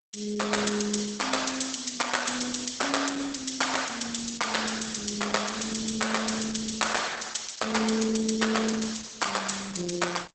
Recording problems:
lossy compression; Opus, log-spectral distance 11 dB, nothing above 8 kHz

